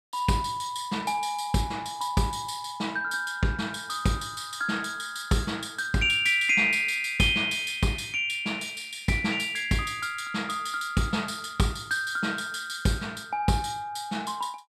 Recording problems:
none

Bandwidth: 14.5 kHz